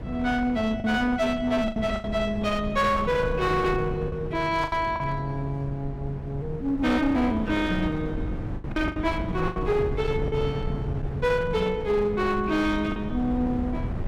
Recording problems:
distortion; hard clipping, uneven, signal-to-distortion ratio 11 dB
wind noise; below 220 Hz, SNR 8 dB
packet loss; 5% of the sound replaced, filled with the last packet

